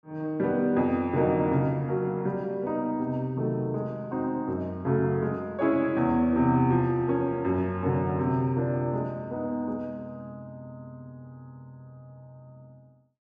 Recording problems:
none

